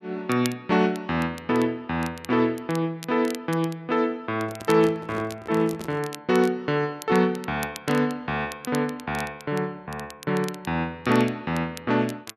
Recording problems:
crackling; vinyl, SNR 18 dB
microphone handling noise; from 4.5 to 6 s; peak -8 dB vs average level

